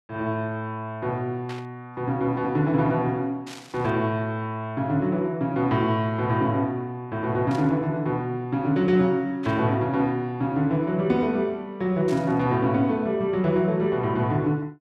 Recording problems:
static burst; 5 times, first at 1.5 s; peak -11 dB vs average level

